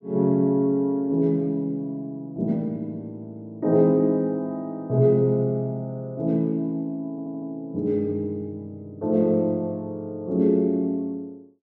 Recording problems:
stutter; at 7 s

